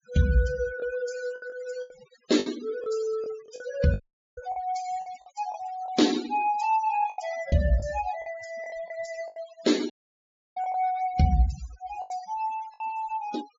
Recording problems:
treble cut off; nothing above 7.4 kHz
noise reduction artefacts; signal-to-artefact ratio 15 dB
packet loss; 8% of the sound replaced, filled with the last packet
dropout; at 4 s and at 10 s for 0.5 s

